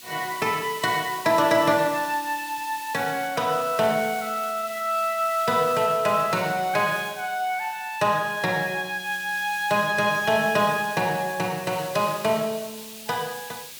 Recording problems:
hiss; SNR 15 dB

